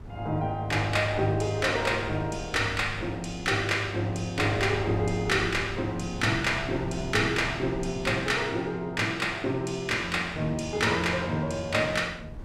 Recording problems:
wind noise; below 190 Hz, SNR 16 dB

